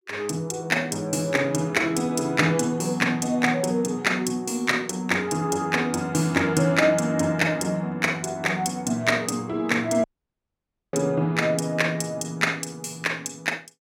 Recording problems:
dropout; at 10 s for 1 s

